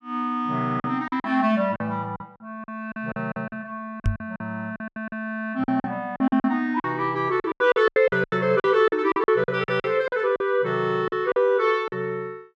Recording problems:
packet loss; 14% of the sound replaced, filled with silence
microphone bump; at 4 s; peak +3 dB vs average level

